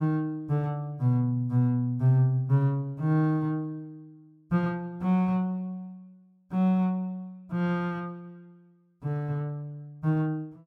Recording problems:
none

